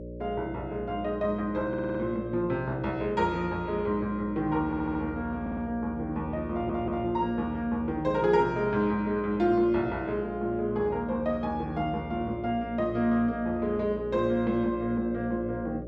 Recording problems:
hum; 60 Hz, harmonics up to 600 Hz, SNR 12 dB
audio stuttering; 4 times, first at 1.5 s

